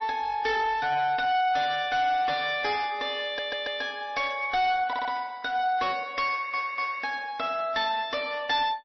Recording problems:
lossy compression; MP3, log-spectral distance 3 dB, nothing above 5.7 kHz
distorted audio; hard clipping, uneven, signal-to-distortion ratio 11 dB
stutter; at 3.5 s, at 5 s and at 6.5 s

